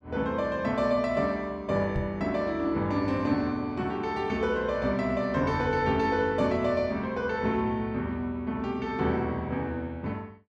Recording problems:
microphone thump; at 2 s; peak 0 dB vs average level

